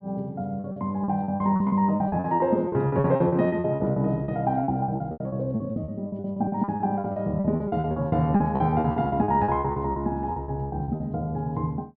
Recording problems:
treble missing; nothing above 5.5 kHz
lost packets; 20% of the sound replaced, filled with repeated pitch periods

